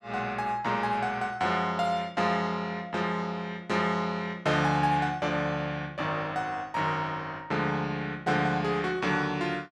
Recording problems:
none

